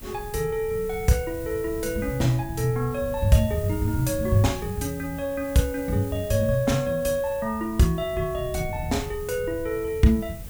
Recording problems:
hiss; slope -3 dB per octave, SNR 18 dB
wind on the microphone; below 120 Hz, SNR 14 dB

